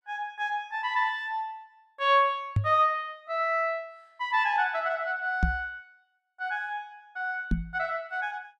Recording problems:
knock on the microphone; at 2.5 s, at 5.5 s and at 7.5 s; peak +6 dB vs average level

